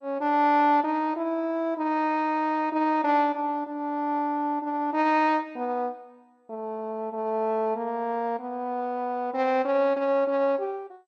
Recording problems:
lossy compression; MP2, log-spectral distance 2 dB

